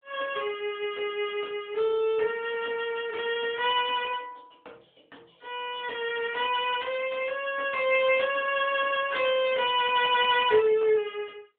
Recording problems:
phone line; 240 Hz to 3.5 kHz, AMR-NB

